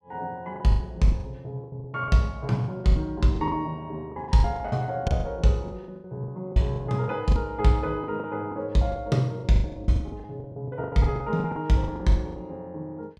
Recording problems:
packet loss; 17% of the sound replaced, filled with the last packet

